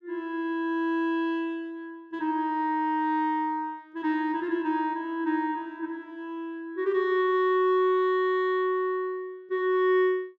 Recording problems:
none

